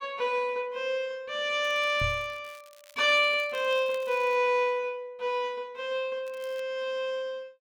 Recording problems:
crackling; from 1.5 to 4.5 s and at 6 s; loose cable, SNR 26 dB
microphone bump; at 2 s; peak -2 dB vs average level

